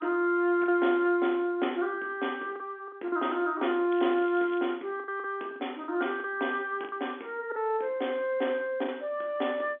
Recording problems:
telephone audio; 240 Hz to 3.5 kHz, G.711
lost packets; 6% of the sound replaced, filled with the last packet
crackle; at 4 s; loose cable, SNR 23 dB

